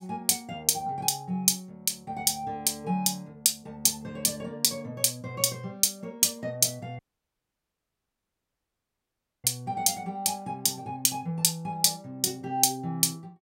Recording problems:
audio cutting out; at 7 s for 2.5 s

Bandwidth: 16 kHz